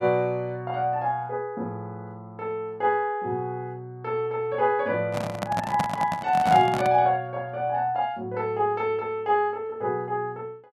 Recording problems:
handling noise; from 5 to 7 s; peak +2 dB vs average level

